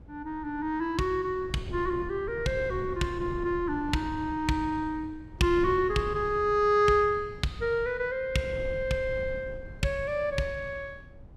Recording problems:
wind noise; below 160 Hz, SNR 15 dB

